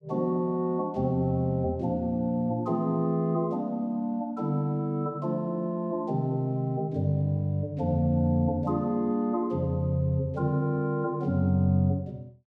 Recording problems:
none

